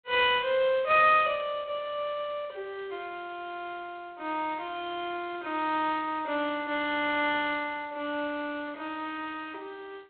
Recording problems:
telephone audio; 320 Hz to 3.4 kHz, G.726

